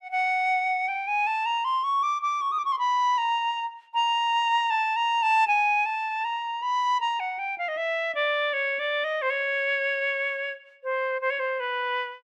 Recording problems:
none

